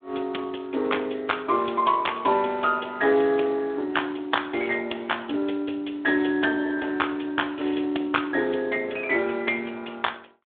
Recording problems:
telephone audio; 260 Hz to 3.6 kHz, Speex

